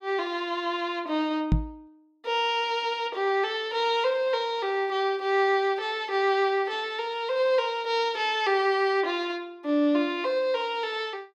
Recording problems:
microphone bump; at 1.5 s; peak +6 dB vs average level

